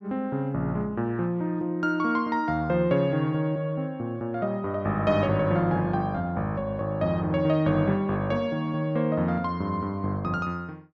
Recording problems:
none

